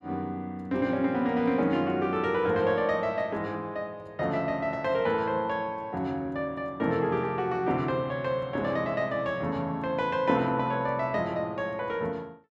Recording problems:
none

